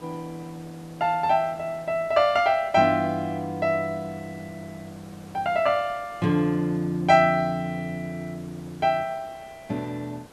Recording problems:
background hiss; slope -5 dB per octave, SNR 24 dB

